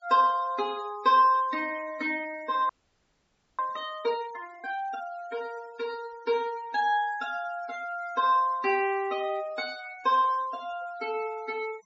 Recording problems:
low-pass filter; nothing above 8 kHz
denoising artefacts; signal-to-artefact ratio 20 dB
frozen audio; at 2.5 s for 1 s

